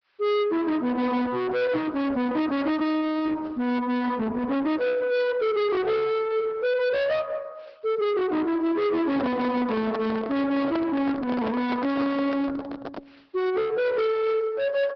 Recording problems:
low-pass filter; nothing above 5 kHz
codec artefacts; Opus, log-spectral distance 2 dB
distorted audio; soft clipping, signal-to-distortion ratio 7 dB
handling noise; from 9 to 13 s; peak -1 dB vs average level

